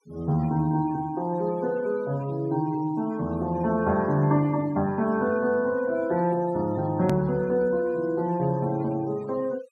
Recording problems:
noise reduction artefacts; signal-to-artefact ratio 24 dB
edit click; at 7 s

